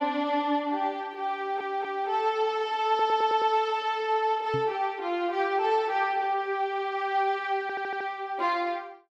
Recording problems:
audio stuttering; at 1.5 s, at 3 s and at 7.5 s
knock on the microphone; at 4.5 s; peak -4 dB vs average level

